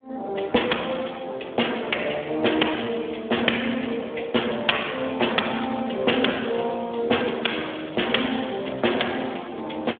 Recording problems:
telephone audio; 240 Hz to 3.5 kHz, Speex

